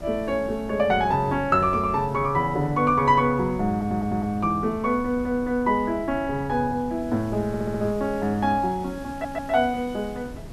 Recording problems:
background hiss; slope -3 dB per octave, SNR 26 dB
wind on the microphone; below 260 Hz, SNR 16 dB
audio stuttering; at 3.5 s, at 7.5 s and at 9 s

